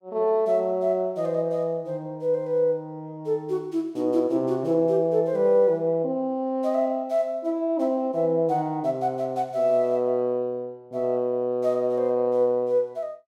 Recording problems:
none

